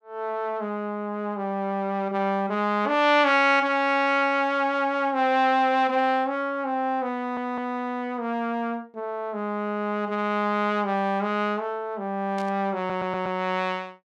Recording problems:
audio stuttering; at 7 s and at 13 s
burst of static; at 12 s; peak -13 dB vs average level

